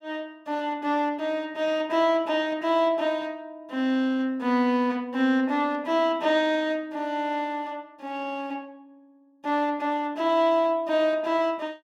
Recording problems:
none

